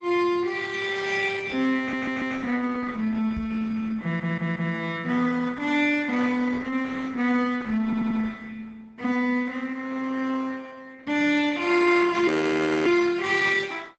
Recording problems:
lossy codec; Opus, log-spectral distance 4 dB, nothing above 7.8 kHz
audio stuttering; at 2 s, at 4 s and at 8 s
knock on the microphone; at 3.5 s; peak -5 dB vs average level
audio freezing; at 12 s for 0.5 s

